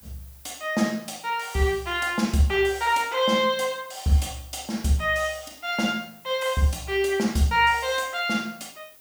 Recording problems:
background hiss; slope -2 dB per octave, SNR 24 dB

